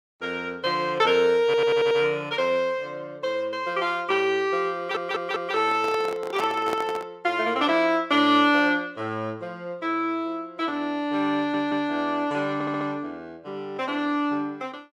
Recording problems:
stutter; 4 times, first at 1.5 s
microphone handling noise; from 5.5 to 7 s; peak -2 dB vs average level

